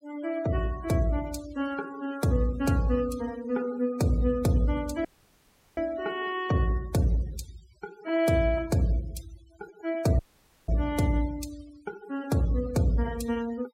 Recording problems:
denoising artefacts; signal-to-artefact ratio 20 dB
audio cutting out; at 5 s for 0.5 s and at 10 s

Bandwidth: 16 kHz